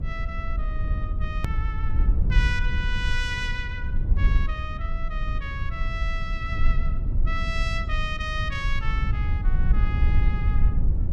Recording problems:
mains hum; 60 Hz, harmonics up to 600 Hz, SNR 21 dB
rumble; below 68 Hz, SNR -6 dB
click at an edit; at 1.5 s

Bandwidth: 14.5 kHz